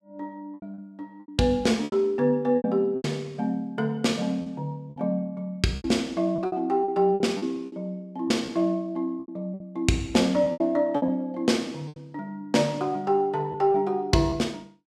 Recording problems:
packet loss; 10% of the sound replaced, filled with repeated pitch periods

